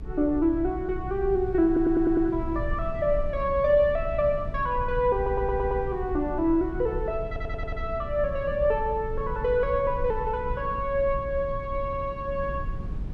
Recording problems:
hum; 60 Hz, harmonics up to 420 Hz, SNR 18 dB
rumble; below 72 Hz, SNR 10 dB
stutter; 4 times, first at 1.5 s

